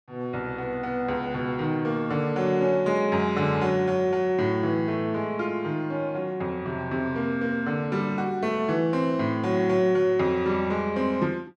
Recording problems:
none

